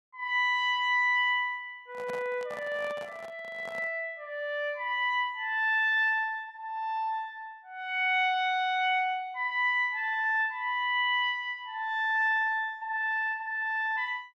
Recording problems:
handling noise; from 2 to 4 s; peak -11 dB vs average level

